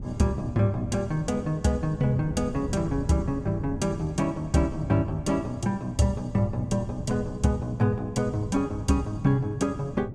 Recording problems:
wind noise; below 200 Hz, SNR 10 dB

